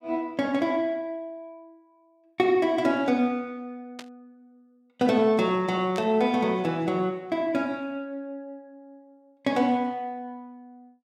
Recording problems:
burst of static; at 4 s and at 6 s; peak -10 dB vs average level

